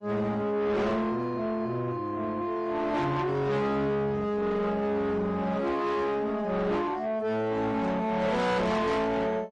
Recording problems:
codec artefacts; AAC, then MP3, log-spectral distance 2 dB, nothing above 10.4 kHz
distorted audio; soft clipping, signal-to-distortion ratio 7 dB

